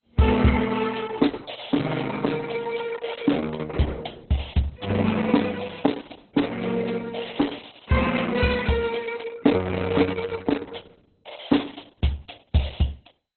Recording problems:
lossy compression; Opus, then MP2, log-spectral distance 7 dB, nothing above 4 kHz

